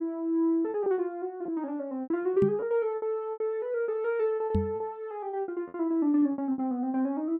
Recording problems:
lost packets; 11% of the sound replaced, filled with repeated pitch periods
knock on the microphone; at 2.5 s and at 4.5 s; peak +5 dB vs average level

